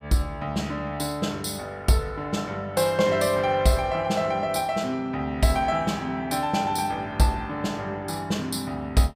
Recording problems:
none

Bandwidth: 15.5 kHz